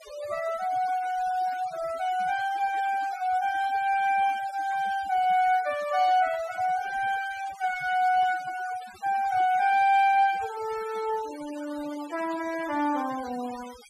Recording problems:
noise reduction artefacts; signal-to-artefact ratio 18 dB

